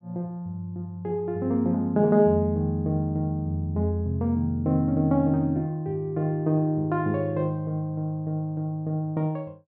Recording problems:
low-pass filter; nothing above 5.5 kHz

